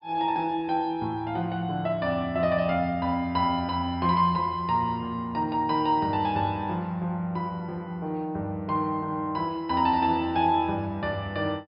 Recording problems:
treble cut off; nothing above 5.5 kHz

